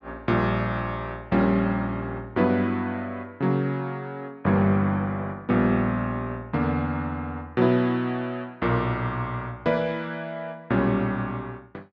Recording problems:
none

